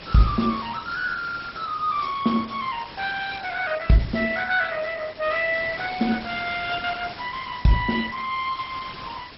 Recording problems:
lossy compression; Opus, then MP2, log-spectral distance 12 dB, nothing above 5.5 kHz
hiss; slope -2 dB per octave, SNR 15 dB

